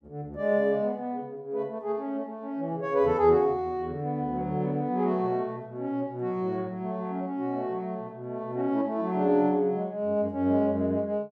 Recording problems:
none

